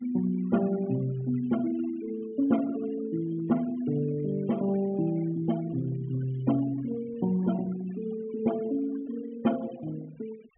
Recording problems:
treble cut off; nothing above 3.1 kHz
denoising artefacts; signal-to-artefact ratio 19 dB

